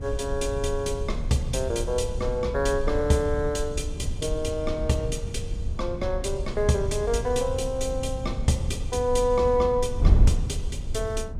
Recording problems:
wind noise; below 86 Hz, SNR 4 dB

